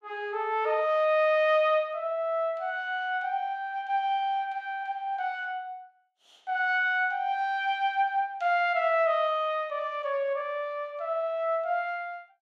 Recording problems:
none

